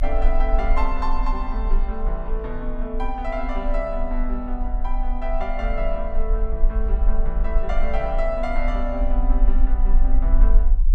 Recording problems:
rumble; below 38 Hz, strongest tone 24 Hz, SNR -4 dB

